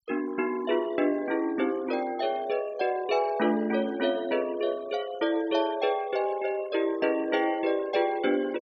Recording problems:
noise reduction artefacts; signal-to-artefact ratio 20 dB

